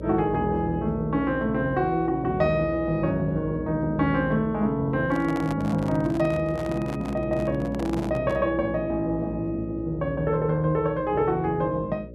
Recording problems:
electrical hum; 60 Hz, harmonics up to 600 Hz, SNR 12 dB
handling noise; from 5 to 8.5 s; peak -7 dB vs average level

